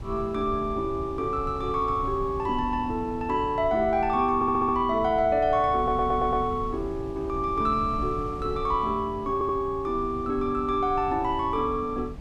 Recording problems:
wind on the microphone; below 140 Hz, SNR 13 dB
stutter; at 4.5 s, at 6 s and at 9.5 s

